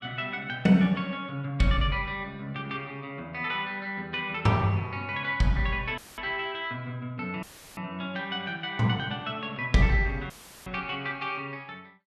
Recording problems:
audio cutting out; at 6 s, at 7.5 s and at 10 s; filled with static

